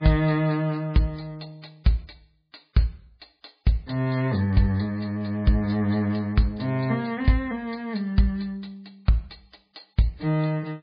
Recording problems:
lossy codec; MP3, log-spectral distance 3 dB, nothing above 4.6 kHz

